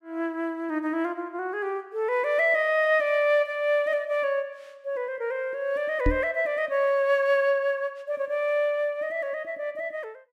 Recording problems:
microphone bump; at 6 s; peak +4 dB vs average level

